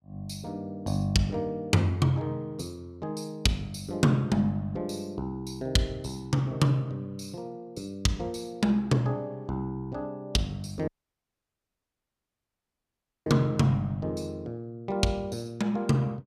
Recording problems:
dropout; at 11 s for 2.5 s

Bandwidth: 15 kHz